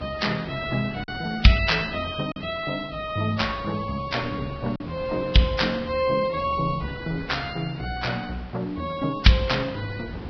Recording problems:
codec artefacts; Vorbis, log-spectral distance 5 dB, nothing above 5.3 kHz
hiss; SNR 17 dB
wind on the microphone; below 330 Hz, SNR 19 dB
packet loss; 1.2% of the sound replaced, filled with silence

